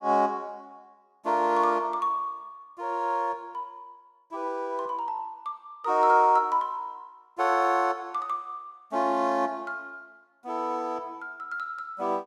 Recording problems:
none

